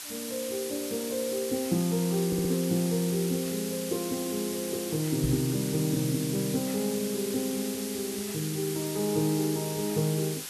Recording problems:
hiss; slope +2 dB per octave, SNR 6 dB
stutter; at 2.5 s
knock on the microphone; at 5 s; peak +6 dB vs average level

